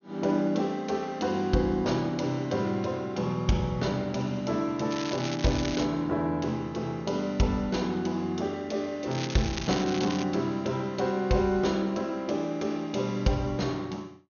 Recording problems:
treble cut off; nothing above 6.6 kHz
crackle; at 5 s and from 9 to 10 s; loose cable, SNR 9 dB

